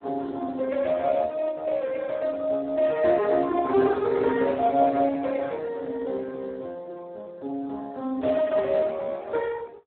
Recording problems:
phone line; 220 Hz to 2.5 kHz, Speex

